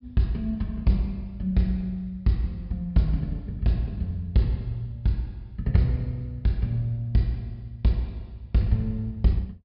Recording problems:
treble missing; nothing above 5.5 kHz

